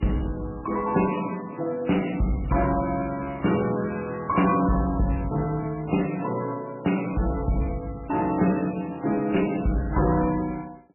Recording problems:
lossy codec; AAC, then MP3, log-spectral distance 7 dB, nothing above 2.9 kHz
distorted audio; soft clipping, signal-to-distortion ratio 12 dB

